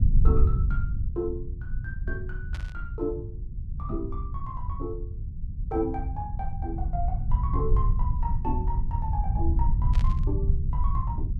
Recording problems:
rumble; below 78 Hz, SNR -6 dB
static burst; at 2.5 s and at 10 s; peak -4 dB vs average level

